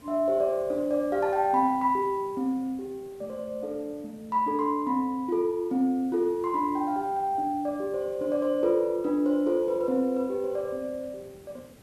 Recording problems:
hiss; SNR 25 dB

